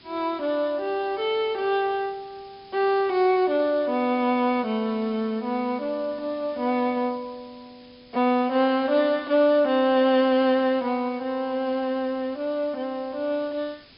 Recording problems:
low-pass filter; nothing above 5.5 kHz
background hiss; SNR 27 dB

